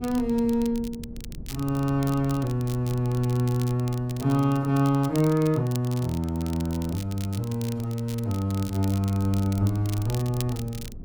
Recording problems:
wind on the microphone; below 140 Hz, SNR 19 dB
crackling; vinyl, SNR 17 dB

